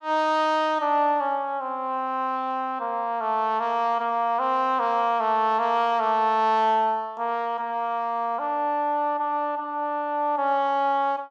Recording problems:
none

